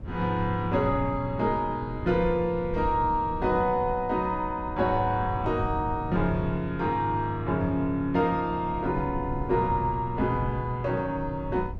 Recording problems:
wind noise; below 150 Hz, SNR 11 dB

